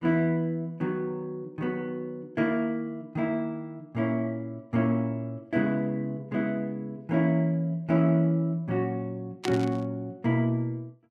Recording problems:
burst of static; at 9.5 s; peak -1 dB vs average level

